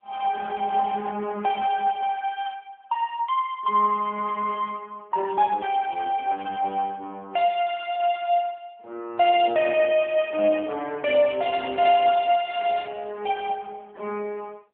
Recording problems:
telephone audio; 280 Hz to 3.1 kHz, AMR-NB

